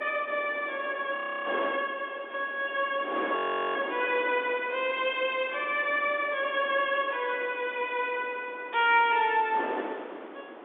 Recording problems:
phone line; 240 Hz to 3.6 kHz, G.711
wind on the microphone; below 1 kHz, SNR 12 dB
frozen audio; at 1 s and at 3.5 s

